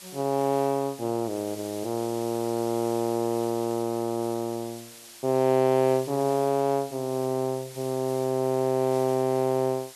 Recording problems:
hiss; slope +2 dB per octave, SNR 17 dB

